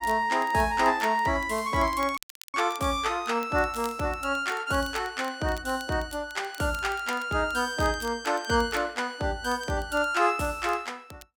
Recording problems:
crackling; vinyl, SNR 22 dB
audio cutting out; at 2 s

